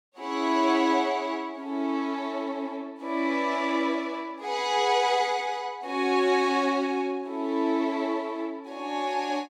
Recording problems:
none

